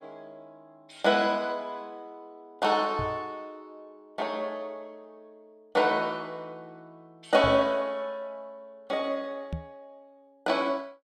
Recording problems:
microphone thump; at 3 s, at 7.5 s and at 9.5 s; peak -2 dB vs average level

